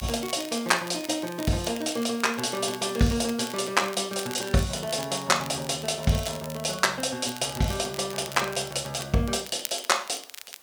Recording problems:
hiss; SNR 23 dB
crackle; vinyl, SNR 14 dB

